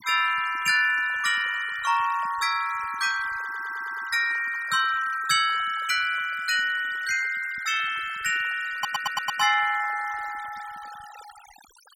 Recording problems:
noise reduction artefacts; signal-to-artefact ratio 17 dB
audio stuttering; at 3.5 s and at 8.5 s

